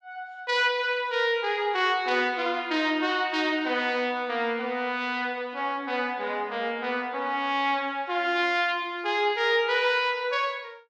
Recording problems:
none

